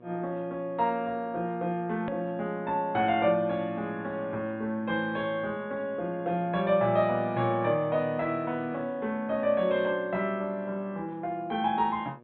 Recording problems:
treble cut off; nothing above 4 kHz
hum; 60 Hz, harmonics up to 1.7 kHz, SNR 25 dB
edit click; at 2 s

